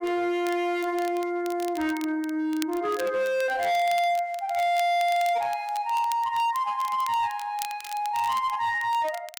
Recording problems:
distortion; hard clipping, signal-to-distortion ratio 11 dB
crackle; vinyl, SNR 18 dB

